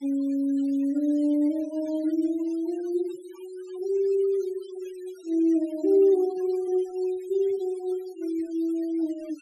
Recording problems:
denoising artefacts; signal-to-artefact ratio 28 dB

